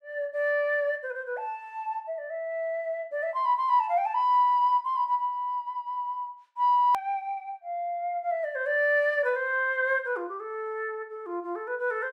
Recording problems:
edit click; at 7 s

